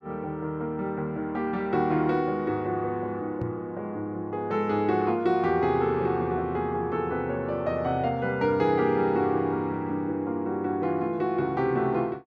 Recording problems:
microphone thump; at 3.5 s; peak -4 dB vs average level

